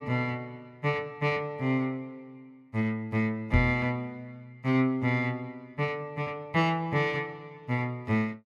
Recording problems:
microphone thump; at 3.5 s; peak +6 dB vs average level

